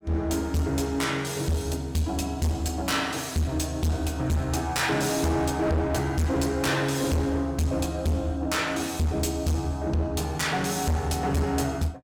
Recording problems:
distorted audio; hard clipping, uneven, signal-to-distortion ratio 7 dB

